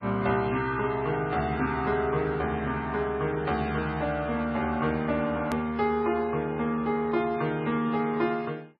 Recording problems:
lossy compression; MP3, log-spectral distance 2 dB, nothing above 13.1 kHz
click at an edit; at 5.5 s

